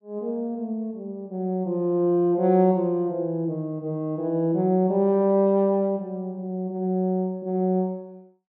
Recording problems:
none

